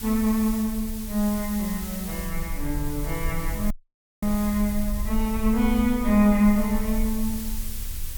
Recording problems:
background hiss; SNR 12 dB
rumble; below 52 Hz, SNR 10 dB
audio cutting out; at 3.5 s for 0.5 s

